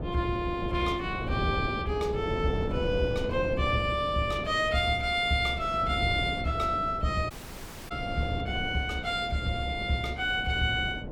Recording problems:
hum; 60 Hz, harmonics up to 720 Hz, SNR 22 dB
wind on the microphone; below 400 Hz, SNR 8 dB
audio cutting out; at 7.5 s for 0.5 s

